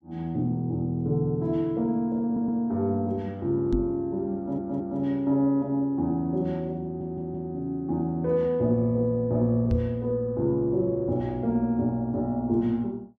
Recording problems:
audio stuttering; at 2.5 s, at 4.5 s and at 7 s
microphone bump; at 3.5 s and at 9.5 s; peak +2 dB vs average level

